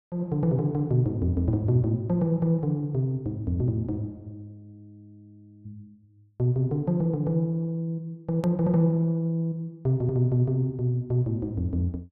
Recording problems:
edit click; at 8.5 s

